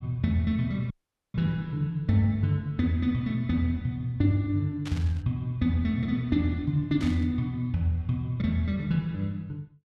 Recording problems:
audio cutting out; at 1 s
burst of static; at 5 s and at 7 s; peak -9 dB vs average level

